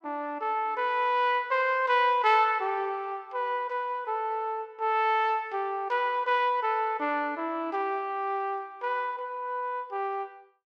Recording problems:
none

